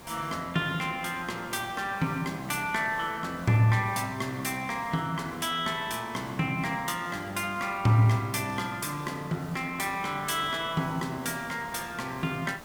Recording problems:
hiss; SNR 18 dB

